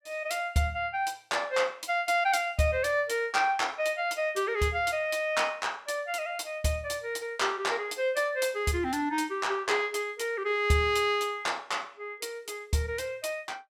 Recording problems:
none

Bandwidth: 17 kHz